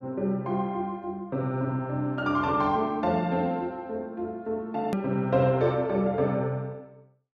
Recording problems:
hard cut with a click; at 5 s

